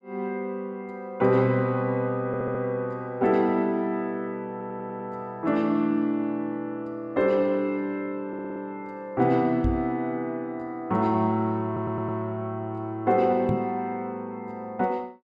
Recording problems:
stutter; 4 times, first at 2.5 s
knock on the microphone; at 9.5 s and at 13 s; peak +4 dB vs average level

